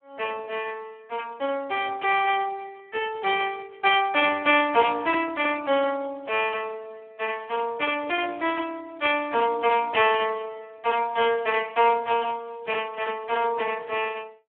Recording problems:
phone line; 260 Hz to 3.5 kHz, Speex

